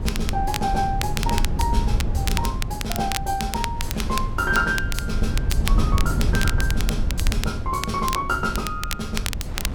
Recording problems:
rumble; below 94 Hz, SNR 0 dB
wind on the microphone; below 1.1 kHz, SNR 20 dB
crackle; vinyl, SNR 5 dB

